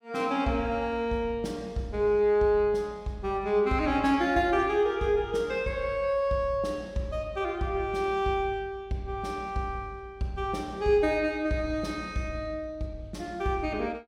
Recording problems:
none

